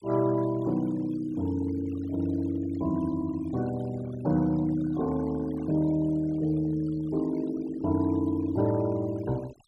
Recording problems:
denoising artefacts; signal-to-artefact ratio 21 dB

